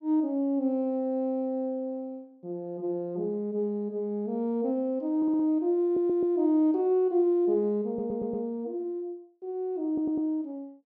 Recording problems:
stutter; 4 times, first at 5 s

